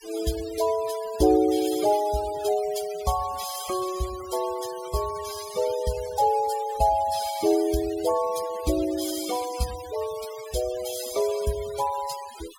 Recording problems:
denoising artefacts; signal-to-artefact ratio 14 dB

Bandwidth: 17 kHz